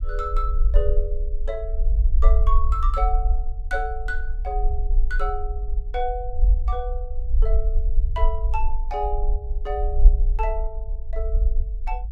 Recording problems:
rumble; below 50 Hz, SNR -6 dB

